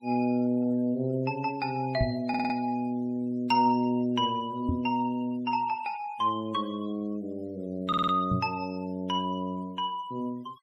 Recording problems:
denoising artefacts; signal-to-artefact ratio 25 dB
microphone thump; at 2 s, at 4.5 s and at 8.5 s; peak +4 dB vs average level
stutter; at 2.5 s and at 8 s

